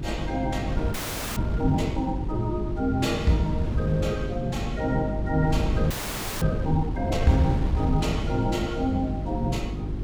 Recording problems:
electrical hum; 50 Hz, harmonics up to 400 Hz, SNR 7 dB
wind on the microphone; below 150 Hz, SNR 5 dB
audio freezing; at 1 s and at 6 s for 0.5 s

